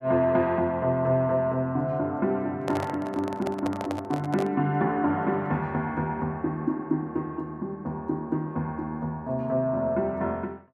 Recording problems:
handling noise; from 2.5 to 4.5 s; peak -2 dB vs average level

